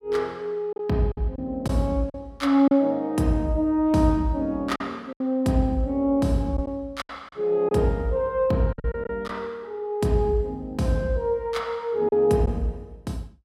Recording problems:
lost packets; 5% of the sound replaced, filled with silence

